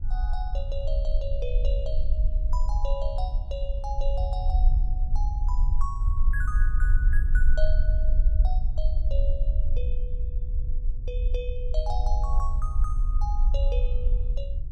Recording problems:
rumble; below 50 Hz, strongest tone 20 Hz, SNR -10 dB

